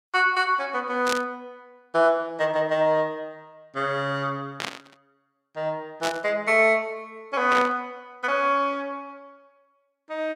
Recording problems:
burst of static; 4 times, first at 1 s; peak 0 dB vs average level

